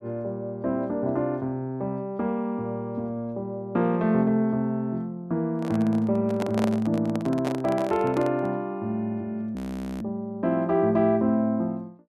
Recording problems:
handling noise; from 5.5 to 8.5 s; peak 0 dB vs average level
audio freezing; at 9.5 s

